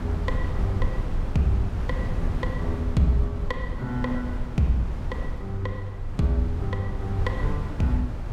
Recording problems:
wind noise; below 100 Hz, SNR 3 dB

